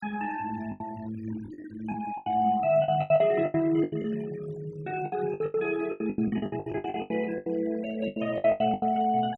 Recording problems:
noise reduction artefacts; signal-to-artefact ratio 22 dB
packet loss; 19% of the sound replaced, filled with the last packet

